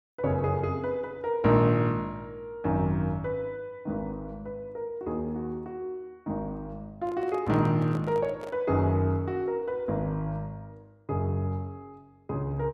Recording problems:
microphone handling noise; from 7 to 8.5 s; peak -9 dB vs average level

